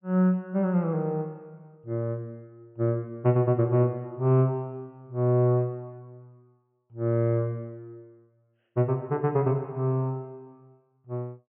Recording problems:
treble cut off; nothing above 3.1 kHz

